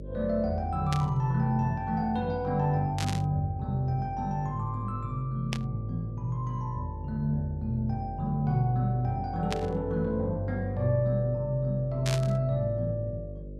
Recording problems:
electrical hum; 50 Hz, harmonics up to 600 Hz, SNR 12 dB
burst of static; 5 times, first at 1 s; peak 0 dB vs average level

